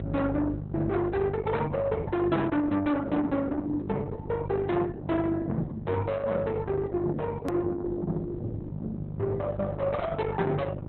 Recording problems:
lossy codec; Opus, log-spectral distance 2 dB
distorted audio; soft clipping, signal-to-distortion ratio 10 dB
hum; 50 Hz, harmonics up to 750 Hz, SNR 7 dB
edit click; at 7.5 s

